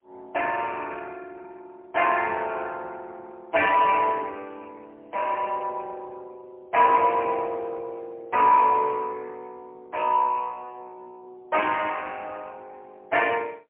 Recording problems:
telephone audio; 300 Hz to 3.1 kHz, AMR-NB, then MP3

